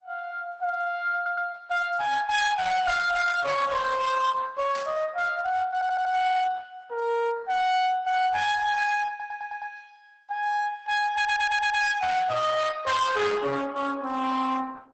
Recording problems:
lossy codec; Opus, log-spectral distance 4 dB, nothing above 8 kHz
distorted audio; hard clipping, signal-to-distortion ratio 8 dB
audio stuttering; 4 times, first at 1 s
static burst; at 5 s; peak -11 dB vs average level

